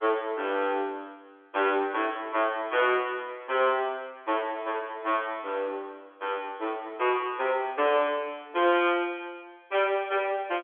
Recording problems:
phone line; 280 Hz to 3.4 kHz, G.711

